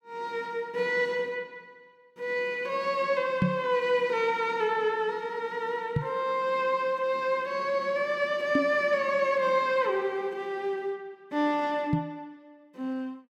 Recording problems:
microphone bump; 4 times, first at 3.5 s; peak +6 dB vs average level

